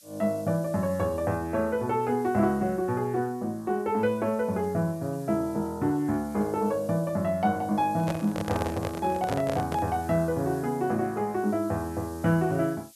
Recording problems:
hiss; SNR 23 dB
microphone handling noise; from 8 to 10 s; peak -1 dB vs average level

